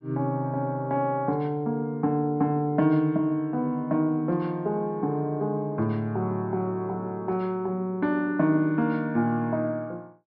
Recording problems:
treble missing; nothing above 5.4 kHz

